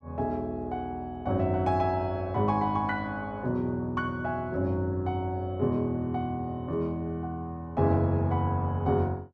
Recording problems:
none

